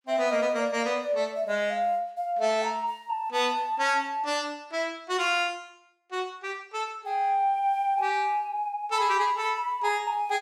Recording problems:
none

